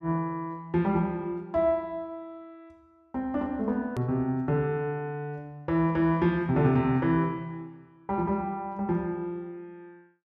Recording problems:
hard cut with a click; at 4 s

